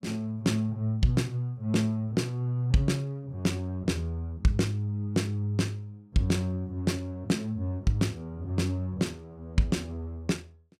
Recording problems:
none

